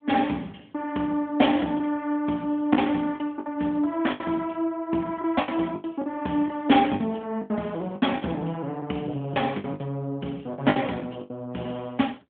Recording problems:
telephone audio; 170 Hz to 3.5 kHz, AMR-NB
lost packets; 9% of the sound replaced, filled with the last packet

